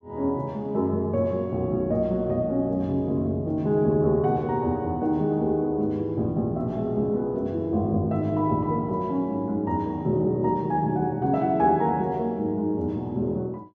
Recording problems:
none

